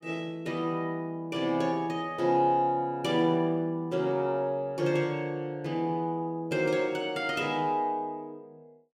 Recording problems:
none

